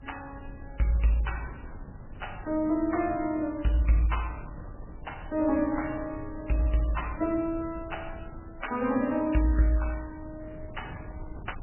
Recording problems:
codec artefacts; MP3, log-spectral distance 4 dB, nothing above 3 kHz
wind on the microphone; below 150 Hz, SNR 16 dB

